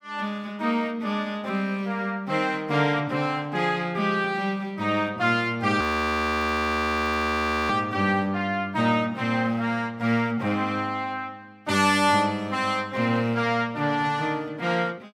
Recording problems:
frozen audio; at 6 s for 2 s

